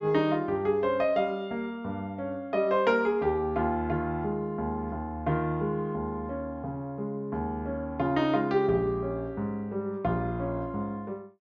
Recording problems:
treble cut off; nothing above 8 kHz

